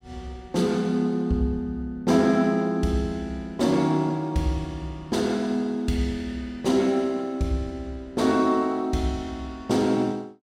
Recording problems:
none

